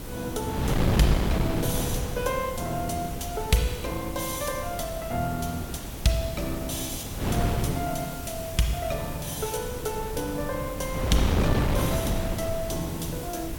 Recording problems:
background hiss; slope 0 dB per octave, SNR 12 dB
wind noise; below 370 Hz, SNR 1 dB

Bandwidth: 17 kHz